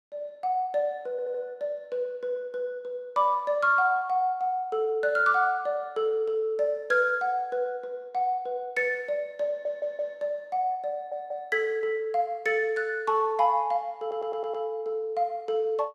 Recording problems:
audio stuttering; 4 times, first at 1 s

